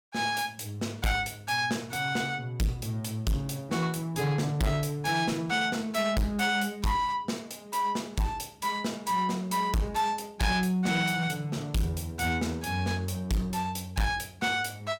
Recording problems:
distortion; soft clipping, signal-to-distortion ratio 6 dB

